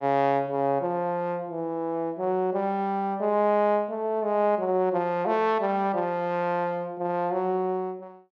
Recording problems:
none

